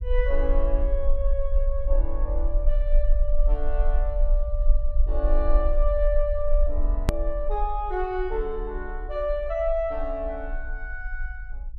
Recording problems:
rumble; below 42 Hz, strongest tone 20 Hz, SNR -2 dB
edit click; at 7 s

